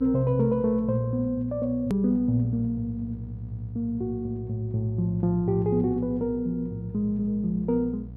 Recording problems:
electrical hum; 60 Hz, harmonics up to 480 Hz, SNR 15 dB
edit click; at 2 s

